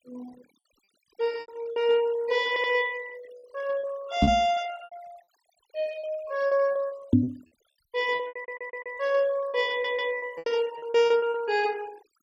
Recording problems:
denoising artefacts; signal-to-artefact ratio 22 dB
lost packets; 11% of the sound replaced, filled with repeated pitch periods
stutter; at 2.5 s, at 8.5 s and at 9.5 s
knock on the microphone; at 4 s and at 7 s; peak +10 dB vs average level

